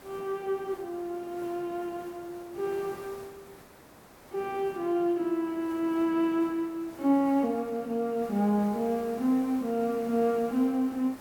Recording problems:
background hiss; slope -6 dB per octave, SNR 20 dB

